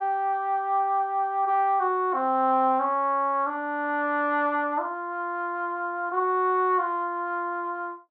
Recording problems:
none

